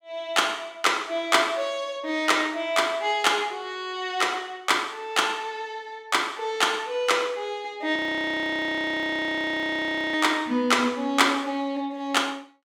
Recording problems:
frozen audio; at 8 s for 2 s

